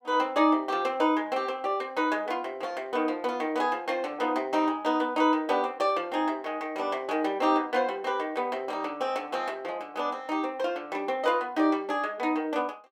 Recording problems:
none

